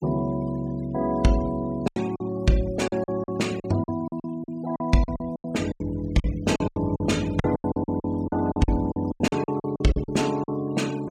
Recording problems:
noise reduction artefacts; signal-to-artefact ratio 20 dB
packet loss; 15% of the sound replaced, filled with silence

